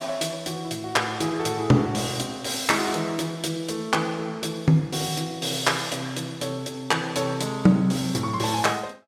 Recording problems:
none

